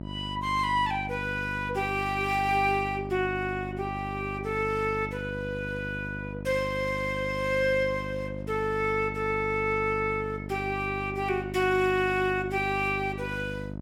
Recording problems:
hum; 50 Hz, harmonics up to 1 kHz, SNR 9 dB

